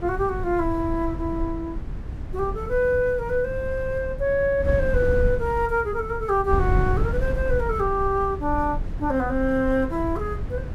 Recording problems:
wind noise; below 98 Hz, SNR 6 dB

